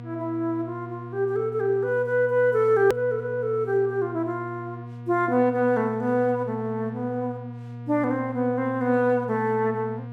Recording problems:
hum; 60 Hz, harmonics up to 1.2 kHz, SNR 13 dB
click at an edit; at 3 s

